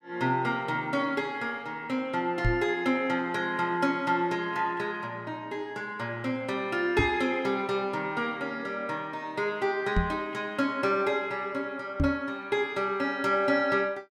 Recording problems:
knock on the microphone; 4 times, first at 2.5 s; peak +5 dB vs average level

